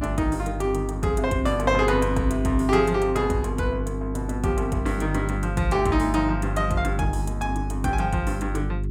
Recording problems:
mains hum; 50 Hz, harmonics up to 400 Hz, SNR 5 dB

